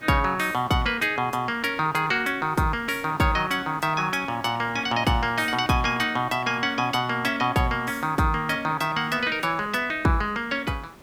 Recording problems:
hiss; slope -5 dB per octave, SNR 23 dB

